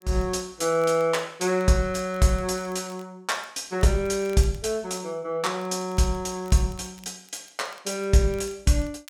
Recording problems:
crackling; vinyl, SNR 28 dB

